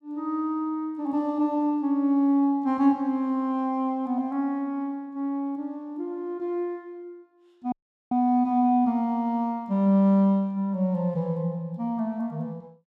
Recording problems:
audio cutting out; at 7.5 s

